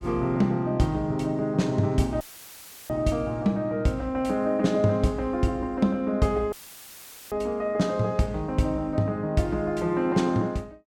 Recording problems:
audio cutting out; at 2 s for 0.5 s and at 6.5 s for 1 s; filled with static

